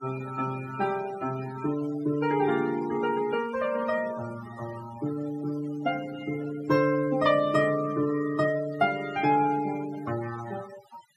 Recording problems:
denoising artefacts; signal-to-artefact ratio 16 dB

